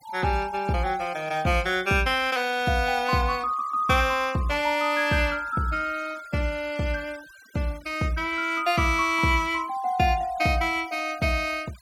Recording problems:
noise reduction artefacts; signal-to-artefact ratio 22 dB

